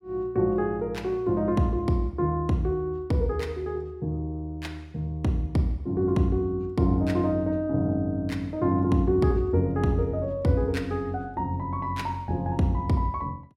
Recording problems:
none

